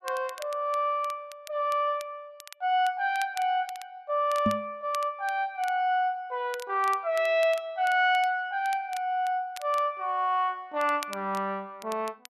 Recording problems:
crackling; vinyl, SNR 20 dB
microphone thump; at 4.5 s; peak +4 dB vs average level

